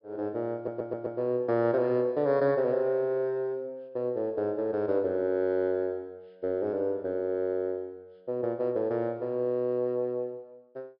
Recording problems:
low-pass filter; nothing above 5.5 kHz
audio stuttering; at 0.5 s

